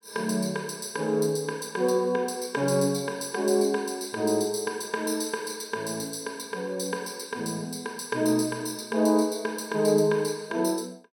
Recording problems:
none

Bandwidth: 17.5 kHz